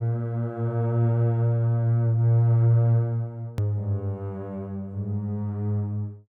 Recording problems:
click at an edit; at 3.5 s

